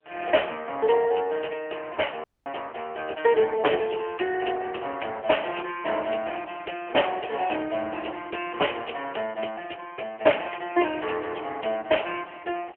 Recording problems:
telephone audio; 320 Hz to 3.1 kHz, AMR-NB
audio cutting out; at 2 s

